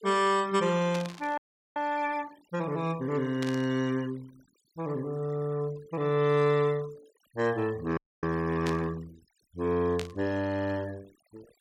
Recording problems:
denoising artefacts; signal-to-artefact ratio 21 dB
burst of static; 4 times, first at 1 s; peak -3 dB vs average level
audio freezing; at 1.5 s and at 8 s

